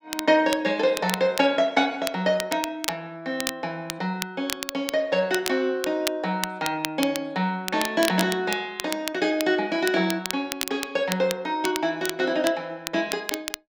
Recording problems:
crackle; vinyl, SNR 8 dB

